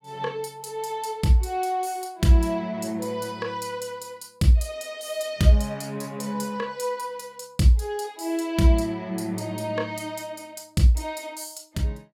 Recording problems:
none

